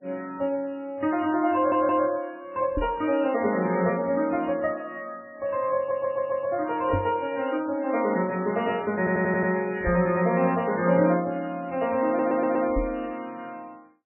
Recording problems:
codec artefacts; MP3, log-spectral distance 3 dB, nothing above 2.8 kHz
audio stuttering; 4 times, first at 1.5 s
microphone bump; 4 times, first at 3 s; peak +1 dB vs average level

